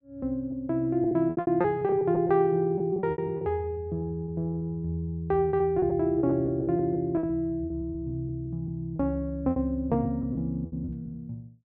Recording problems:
packet loss; 13% of the sound replaced, filled with repeated pitch periods

